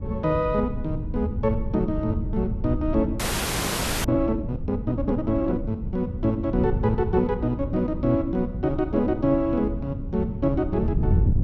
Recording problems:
wind on the microphone; below 130 Hz, SNR 5 dB
audio freezing; at 3 s for 1 s

